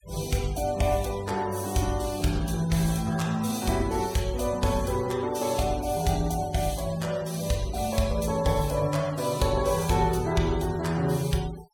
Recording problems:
noise reduction artefacts; signal-to-artefact ratio 18 dB

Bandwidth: 17 kHz